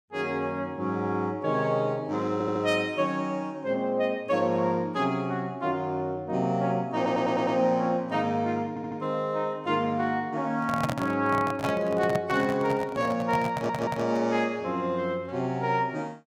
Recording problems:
stutter; 4 times, first at 2.5 s
microphone handling noise; from 11 to 14 s; peak +2 dB vs average level

